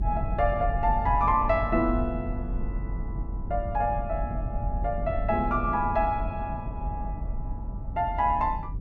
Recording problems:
rumble; below 90 Hz, strongest tone 44 Hz, SNR 5 dB

